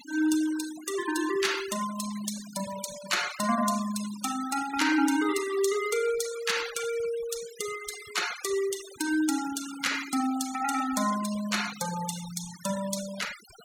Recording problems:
noise reduction artefacts; signal-to-artefact ratio 11 dB

